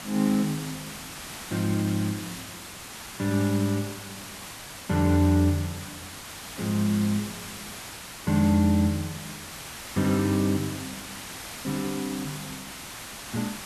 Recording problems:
hiss; slope -1 dB per octave, SNR 11 dB

